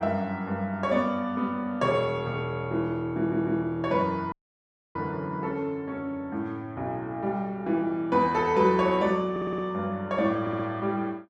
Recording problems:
stutter; at 3 s, at 9.5 s and at 10 s
dropout; at 4.5 s for 0.5 s

